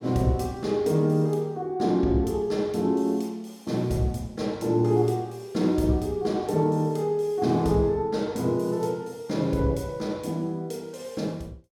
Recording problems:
none

